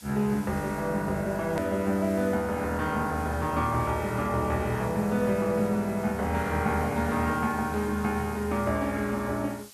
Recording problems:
background hiss; slope +2 dB per octave, SNR 20 dB
hard cut with a click; at 1.5 s

